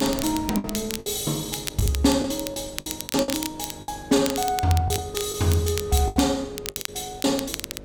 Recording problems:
hum; 50 Hz, harmonics up to 600 Hz, SNR 19 dB
wind on the microphone; below 380 Hz, SNR 20 dB
crackling; vinyl, SNR 9 dB
lost packets; 10% of the sound replaced, filled with the last packet

